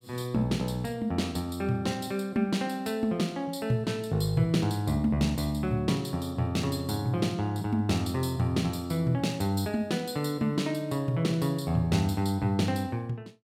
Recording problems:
none

